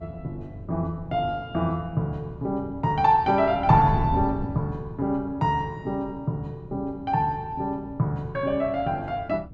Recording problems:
wind noise; below 170 Hz, SNR 12 dB

